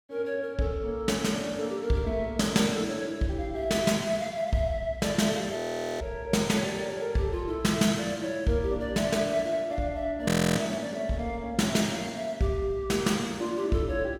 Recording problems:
audio freezing; at 5.5 s and at 10 s

